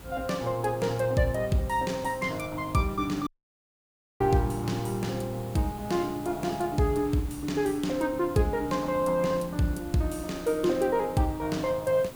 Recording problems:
hiss; slope -4 dB per octave, SNR 19 dB
wind noise; below 370 Hz, SNR 21 dB
audio cutting out; at 3.5 s for 1 s

